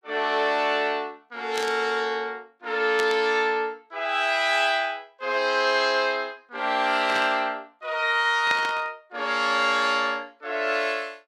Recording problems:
burst of static; 4 times, first at 1.5 s; peak -3 dB vs average level

